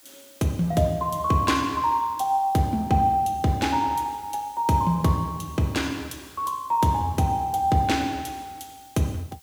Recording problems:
background hiss; slope +1 dB per octave, SNR 26 dB

